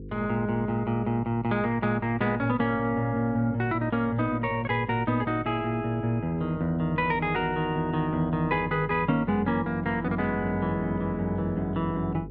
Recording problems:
electrical hum; 50 Hz, harmonics up to 500 Hz, SNR 16 dB

